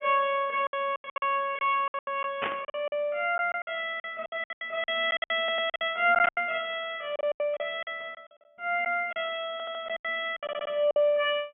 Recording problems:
treble cut off; nothing above 3.3 kHz
packet loss; 16% of the sound replaced, filled with silence
burst of static; at 2.5 s and at 6 s; peak +1 dB vs average level
audio stuttering; at 5.5 s, at 9.5 s and at 10 s

